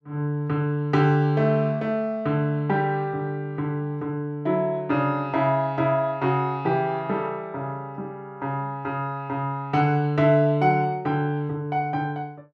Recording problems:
none

